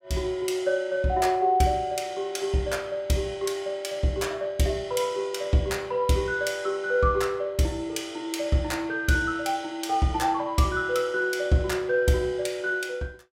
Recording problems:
none

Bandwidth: 16.5 kHz